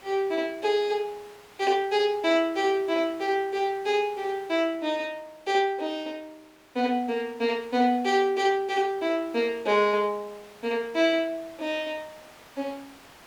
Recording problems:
background hiss; SNR 24 dB

